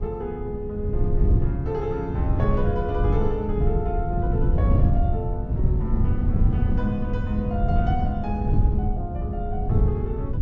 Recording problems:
low-pass filter; nothing above 8 kHz
wind noise; below 120 Hz, SNR -5 dB

